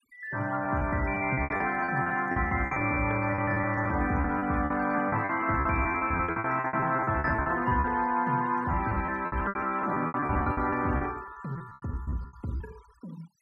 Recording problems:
denoising artefacts; signal-to-artefact ratio 23 dB
packet loss; 18% of the sound replaced, filled with repeated pitch periods

